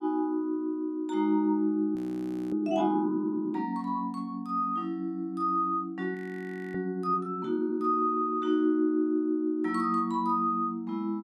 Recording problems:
frozen audio; at 2 s for 0.5 s and at 6 s for 0.5 s

